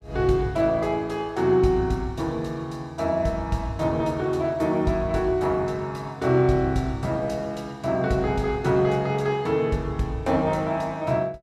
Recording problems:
none

